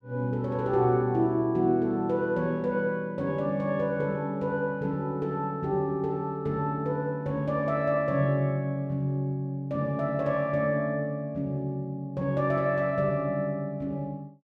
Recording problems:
none

